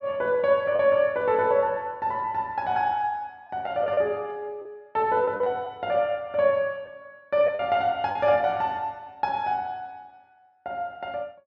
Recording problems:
lost packets; 3% of the sound replaced, filled with the last packet

